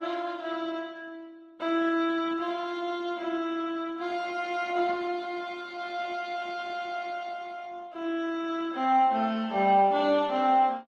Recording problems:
lossy codec; Opus, log-spectral distance 2 dB

